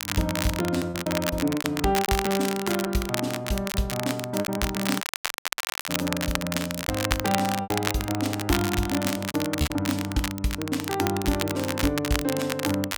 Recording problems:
crackling; vinyl, SNR 4 dB
lost packets; 8% of the sound replaced, filled with repeated pitch periods
dropout; at 5 s for 1 s

